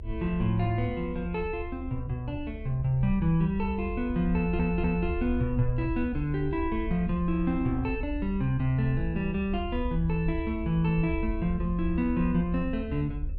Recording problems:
hum; 50 Hz, harmonics up to 600 Hz, SNR 24 dB
low-frequency rumble; below 70 Hz, SNR 8 dB
stutter; at 4.5 s

